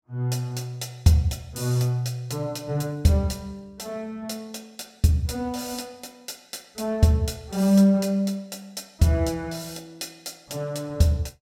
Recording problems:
none

